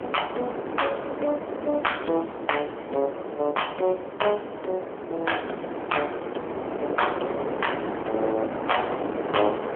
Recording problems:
phone line; 280 Hz to 3.3 kHz, AMR-NB
wind on the microphone; below 790 Hz, SNR 4 dB

